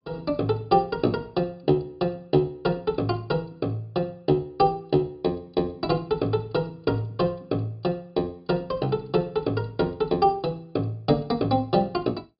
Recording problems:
treble missing; nothing above 5.5 kHz

